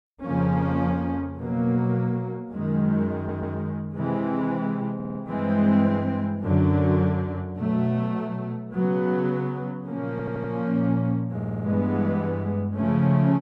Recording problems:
audio stuttering; 4 times, first at 3 s

